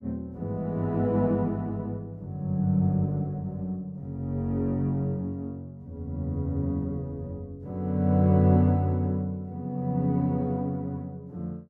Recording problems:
none

